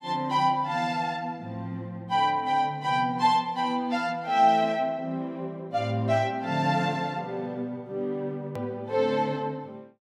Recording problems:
click at an edit; at 8.5 s

